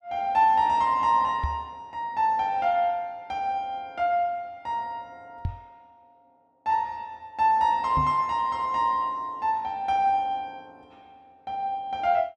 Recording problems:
microphone bump; at 1.5 s, at 5.5 s and at 8 s; peak 0 dB vs average level

